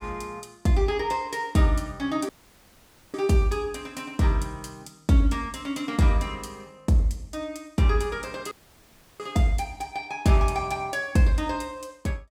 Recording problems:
audio cutting out; at 2.5 s for 1 s and at 8.5 s for 0.5 s

